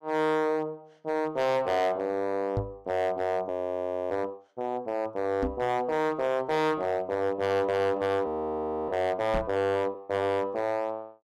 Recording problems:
distorted audio; hard clipping, signal-to-distortion ratio 8 dB
microphone bump; at 2.5 s, at 5.5 s and at 9.5 s; peak +1 dB vs average level
audio freezing; at 3.5 s for 0.5 s and at 8.5 s for 0.5 s

